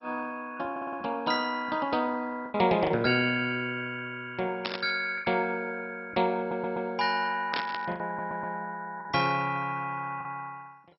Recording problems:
lossy codec; MP2, log-spectral distance 4 dB, nothing above 4.8 kHz
lost packets; 4% of the sound replaced, filled with the last packet
audio stuttering; at 0.5 s, at 6.5 s and at 8 s
static burst; at 4.5 s and at 7.5 s; peak +2 dB vs average level

